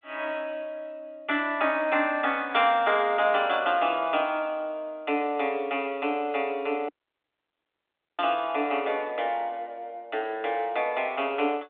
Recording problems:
telephone audio; 240 Hz to 3.6 kHz, G.726
dropout; at 7 s for 1.5 s

